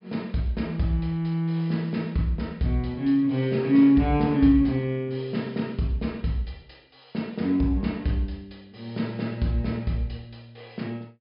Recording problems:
treble cut off; nothing above 5.5 kHz

